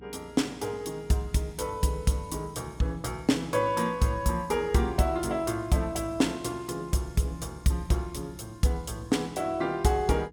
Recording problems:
hum; 60 Hz, harmonics up to 300 Hz, SNR 23 dB

